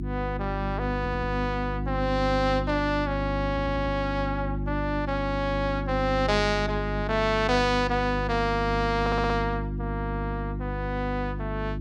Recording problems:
hum; 50 Hz, harmonics up to 350 Hz, SNR 4 dB
audio stuttering; at 1 s, at 3.5 s and at 9 s

